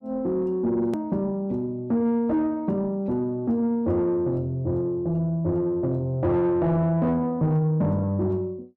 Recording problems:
distorted audio; soft clipping, signal-to-distortion ratio 11 dB
click at an edit; at 1 s

